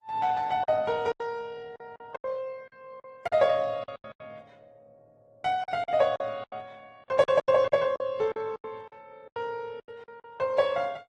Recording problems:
codec artefacts; AAC, then Opus, log-spectral distance 2 dB
lost packets; 14% of the sound replaced, filled with silence

